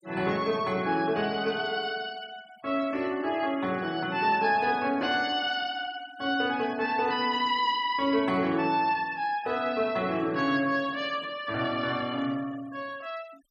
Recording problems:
denoising artefacts; signal-to-artefact ratio 22 dB

